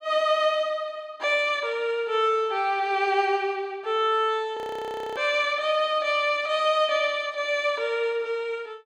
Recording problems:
frozen audio; at 4.5 s for 0.5 s

